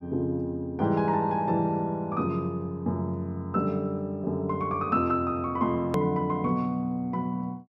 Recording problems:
hard cut with a click; at 6 s

